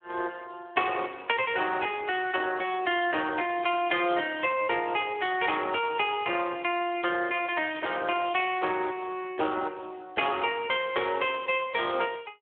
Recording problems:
telephone audio; 280 Hz to 3.4 kHz, Speex

